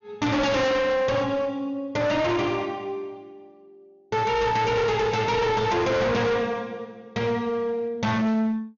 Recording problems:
treble missing; nothing above 6.8 kHz
distorted audio; hard clipping, uneven, signal-to-distortion ratio 6 dB

